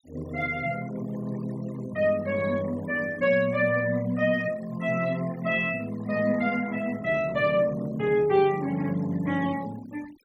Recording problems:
denoising artefacts; signal-to-artefact ratio 22 dB

